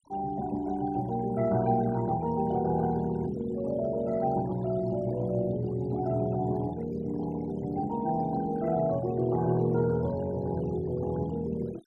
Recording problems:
noise reduction artefacts; signal-to-artefact ratio 21 dB

